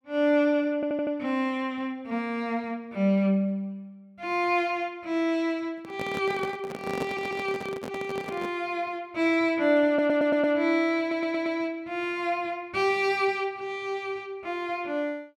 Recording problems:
audio stuttering; 4 times, first at 1 s
microphone handling noise; from 6 to 8.5 s; peak -1 dB vs average level

